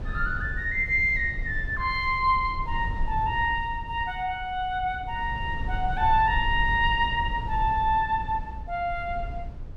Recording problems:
low-frequency rumble; below 80 Hz, SNR 10 dB

